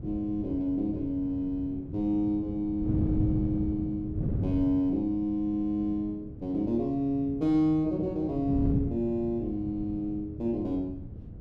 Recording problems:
wind on the microphone; below 190 Hz, SNR 7 dB

